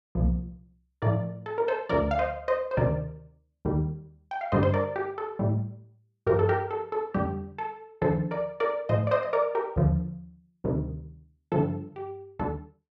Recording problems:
none

